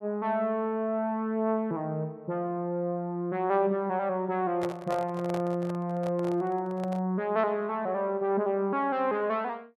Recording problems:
handling noise; from 4.5 to 7 s; peak -3 dB vs average level

